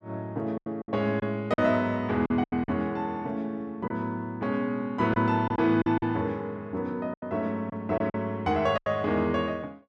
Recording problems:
packet loss; 8% of the sound replaced, filled with silence

